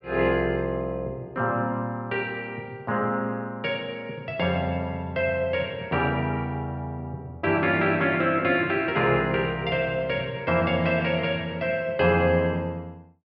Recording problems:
none

